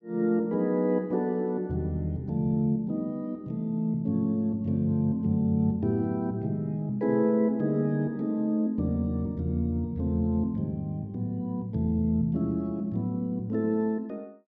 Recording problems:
none

